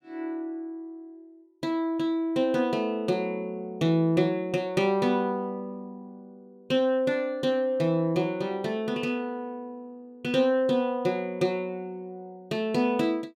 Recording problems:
none

